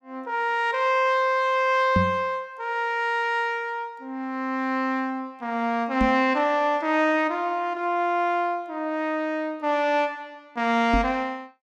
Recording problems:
microphone thump; at 2 s, at 6 s and at 11 s; peak +4 dB vs average level

